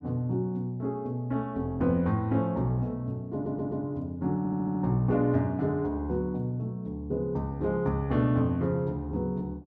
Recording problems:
stutter; at 3.5 s and at 4.5 s

